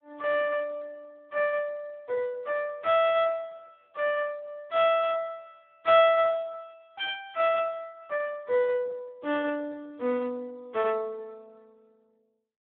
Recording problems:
phone line; 260 Hz to 3.5 kHz, Speex

